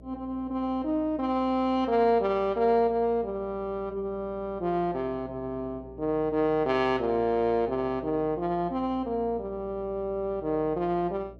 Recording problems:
electrical hum; 60 Hz, harmonics up to 660 Hz, SNR 21 dB

